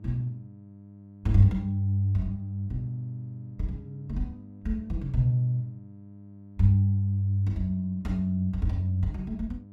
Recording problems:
hum; 50 Hz, harmonics up to 700 Hz, SNR 19 dB

